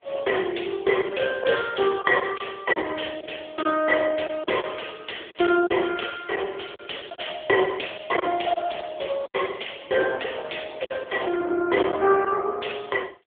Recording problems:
telephone audio; 320 Hz to 3.5 kHz, AMR-NB
lost packets; 5% of the sound replaced, filled with silence

